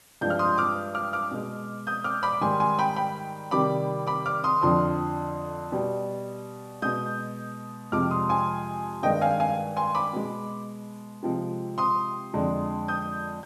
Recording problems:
hiss; slope -1 dB per octave, SNR 28 dB

